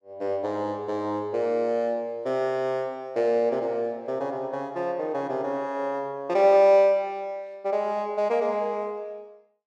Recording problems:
none

